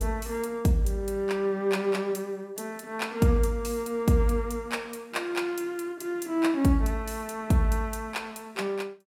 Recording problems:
none

